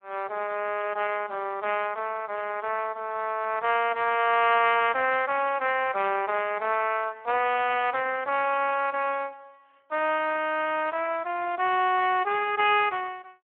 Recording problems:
phone line; 320 Hz to 3.1 kHz, Speex

